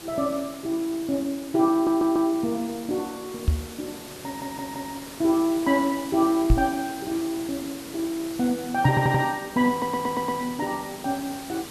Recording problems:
background hiss; slope -3 dB per octave, SNR 14 dB
audio stuttering; 4 times, first at 1.5 s
microphone thump; at 3.5 s, at 6.5 s and at 9 s; peak +9 dB vs average level

